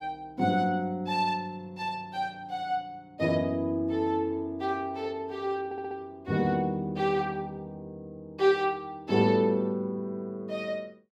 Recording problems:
stutter; at 5.5 s

